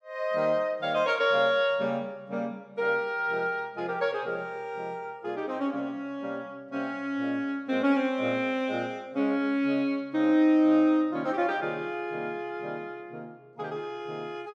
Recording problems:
none

